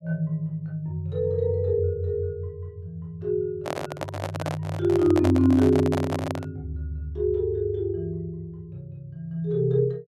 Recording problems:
handling noise; from 3.5 to 6.5 s; peak 0 dB vs average level

